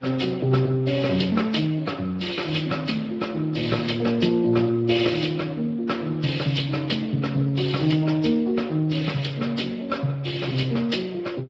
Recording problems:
codec artefacts; Vorbis, then Speex, log-spectral distance 6 dB

